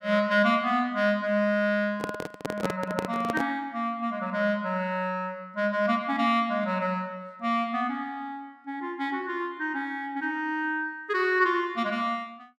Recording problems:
microphone handling noise; from 2 to 3.5 s; peak +2 dB vs average level

